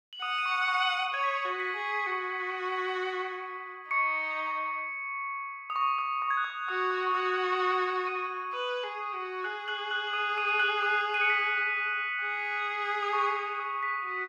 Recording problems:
none

